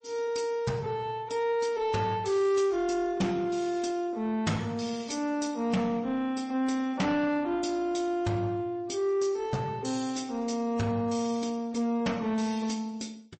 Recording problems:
codec artefacts; MP3, log-spectral distance 2 dB, nothing above 8.2 kHz
distorted audio; soft clipping, signal-to-distortion ratio 11 dB

